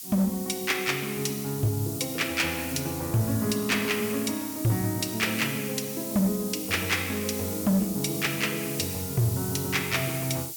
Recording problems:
distorted audio; hard clipping, signal-to-distortion ratio 11 dB
hiss; SNR 7 dB

